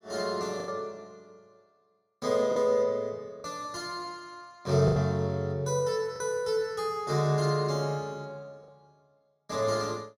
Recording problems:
lost packets; 3% of the sound replaced, filled with the last packet

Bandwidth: 15.5 kHz